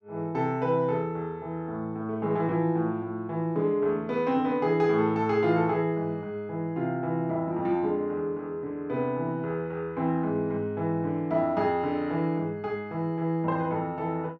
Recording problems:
none

